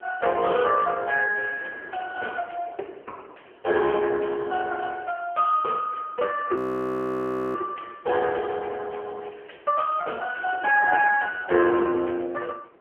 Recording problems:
telephone audio; 280 Hz to 3.1 kHz, AMR-NB
wind on the microphone; below 860 Hz, SNR 22 dB
frozen audio; at 6.5 s for 1 s

